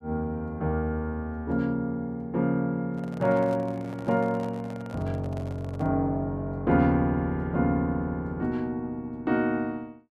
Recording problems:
microphone handling noise; from 3 to 6 s; peak -10 dB vs average level

